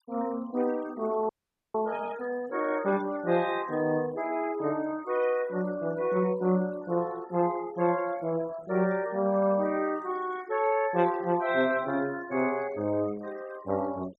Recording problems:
denoising artefacts; signal-to-artefact ratio 21 dB
audio freezing; at 1.5 s

